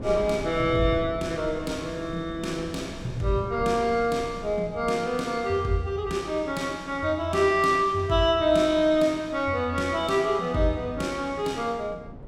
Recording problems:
wind noise; below 330 Hz, SNR 17 dB

